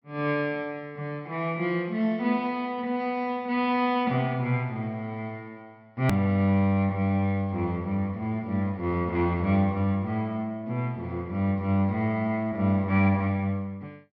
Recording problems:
treble missing; nothing above 5.5 kHz
click at an edit; at 6 s

